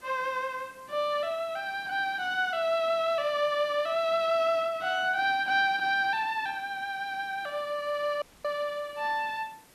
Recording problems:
hiss; slope -3 dB per octave, SNR 27 dB
audio cutting out; at 8 s

